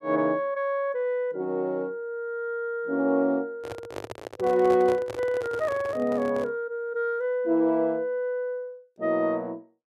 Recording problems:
handling noise; from 3.5 to 6.5 s; peak -5 dB vs average level

